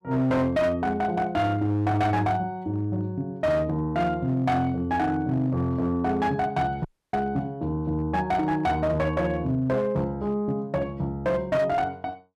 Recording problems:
distortion; hard clipping, signal-to-distortion ratio 12 dB
audio cutting out; at 7 s

